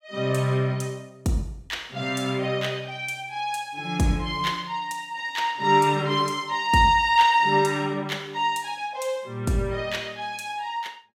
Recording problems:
none

